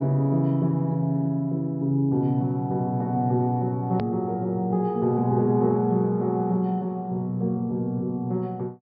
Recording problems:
treble missing; nothing above 5.4 kHz
hard cut with a click; at 4 s

